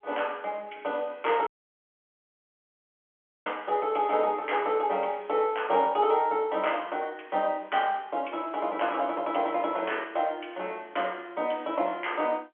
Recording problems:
telephone audio; 220 Hz to 3.3 kHz, G.711
dropout; at 1.5 s for 2 s

